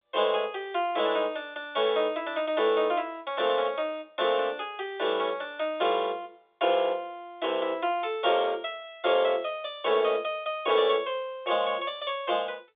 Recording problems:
phone line; 320 Hz to 3.6 kHz, G.711

